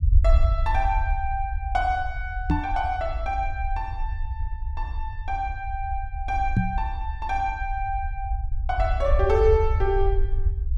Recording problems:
low-frequency rumble; below 68 Hz, SNR 1 dB
microphone bump; at 2.5 s and at 6.5 s; peak +9 dB vs average level

